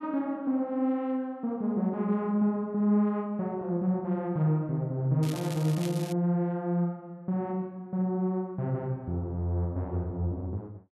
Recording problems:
crackling; at 5 s; loose cable, SNR 15 dB

